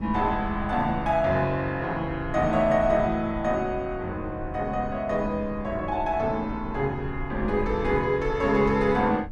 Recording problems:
rumble; below 120 Hz, SNR 13 dB

